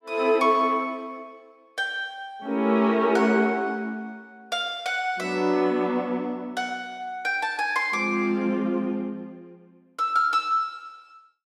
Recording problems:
none

